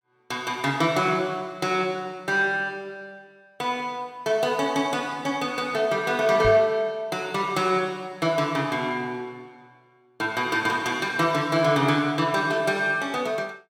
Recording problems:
knock on the microphone; at 6.5 s; peak -2 dB vs average level

